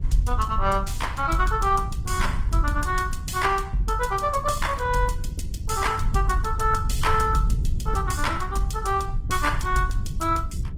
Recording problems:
lossy codec; Opus, log-spectral distance 3 dB
rumble; below 86 Hz, SNR 5 dB

